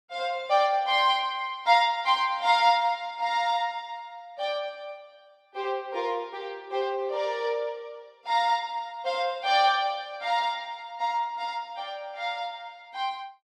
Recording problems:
none

